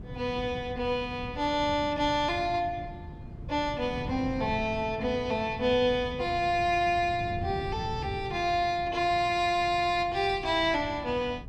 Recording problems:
wind noise; below 180 Hz, SNR 12 dB

